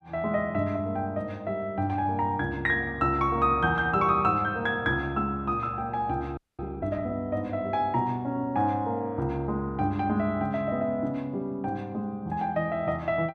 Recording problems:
audio freezing; at 6.5 s

